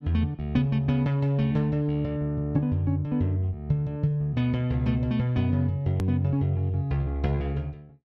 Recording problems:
click at an edit; at 6 s

